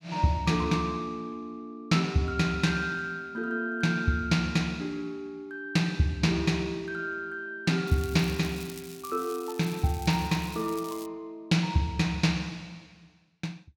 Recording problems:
crackling; from 8 to 11 s; loose cable, SNR 17 dB

